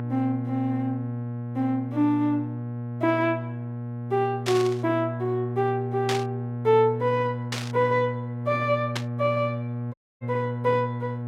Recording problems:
hum; 60 Hz, harmonics up to 1.1 kHz, SNR 6 dB
static burst; 4 times, first at 4.5 s; peak +1 dB vs average level
dropout; at 10 s

